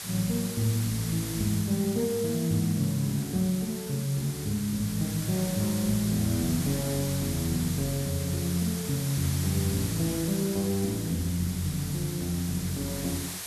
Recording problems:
background hiss; slope +1 dB per octave, SNR 8 dB

